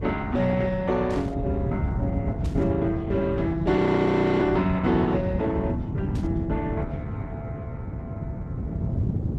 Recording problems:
lossy compression; Opus, log-spectral distance 2 dB, nothing above 13.1 kHz
rumble; below 170 Hz, SNR 4 dB
static burst; at 1 s, at 2.5 s and at 6 s; peak -15 dB vs average level
frozen audio; at 4 s for 0.5 s

